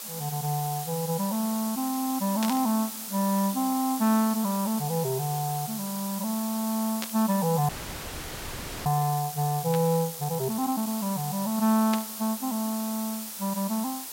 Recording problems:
background hiss; SNR 7 dB
burst of static; 4 times, first at 2.5 s; peak -1 dB vs average level
frozen audio; at 7.5 s for 1 s

